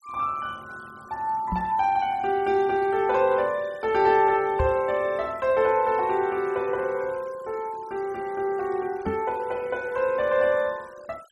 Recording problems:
denoising artefacts; signal-to-artefact ratio 26 dB
knock on the microphone; at 1.5 s, at 4.5 s and at 9 s; peak 0 dB vs average level

